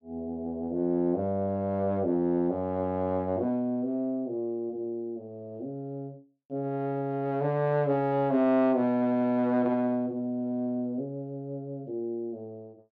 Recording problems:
none

